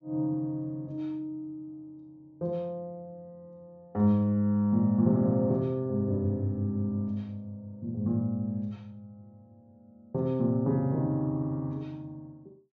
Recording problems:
treble cut off; nothing above 8 kHz

